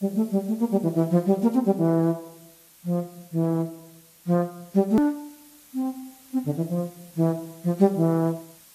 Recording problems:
lossy codec; AAC, log-spectral distance 7 dB, nothing above 19.5 kHz
hiss; slope +1 dB per octave, SNR 25 dB
hard cut with a click; at 5 s

